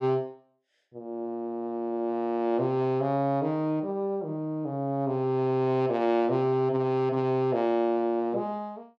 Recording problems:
none

